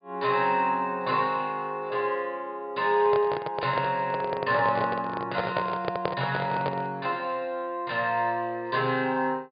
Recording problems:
low-pass filter; nothing above 4.9 kHz
handling noise; from 3 to 7 s; peak +3 dB vs average level

